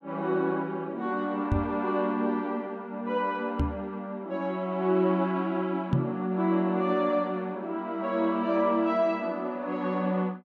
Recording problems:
microphone bump; at 1.5 s, at 3.5 s and at 6 s; peak +6 dB vs average level

